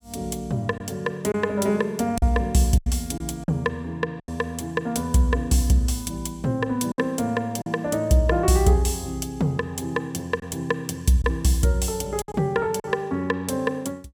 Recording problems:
packet loss; 4% of the sound replaced, filled with silence

